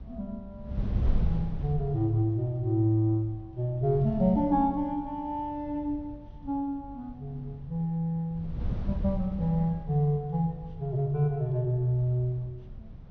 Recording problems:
low-pass filter; nothing above 6.3 kHz
wind noise; below 120 Hz, SNR 9 dB

